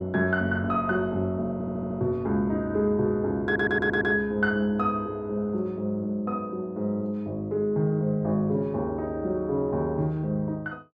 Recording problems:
stutter; at 1.5 s and at 3.5 s

